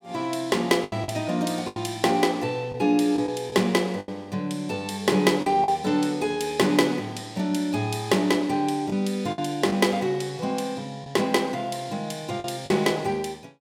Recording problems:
packet loss; 5% of the sound replaced, filled with the last packet

